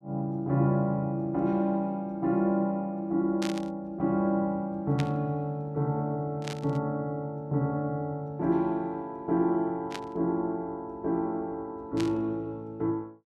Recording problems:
static burst; 5 times, first at 3.5 s; peak -3 dB vs average level

